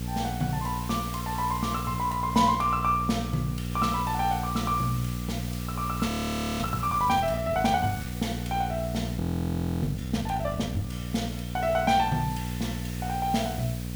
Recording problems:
mains hum; 60 Hz, harmonics up to 540 Hz, SNR 5 dB
hiss; slope +2 dB per octave, SNR 14 dB
audio freezing; at 6 s for 0.5 s and at 9 s for 0.5 s

